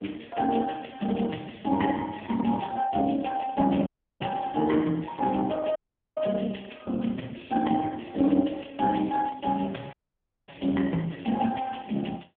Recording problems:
phone line; 130 Hz to 3.4 kHz, AMR-NB
audio cutting out; at 4 s, at 6 s and at 10 s for 0.5 s

